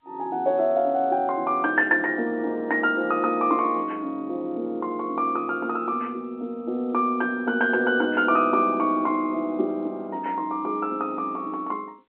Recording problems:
telephone audio; 220 Hz to 3.2 kHz, G.711

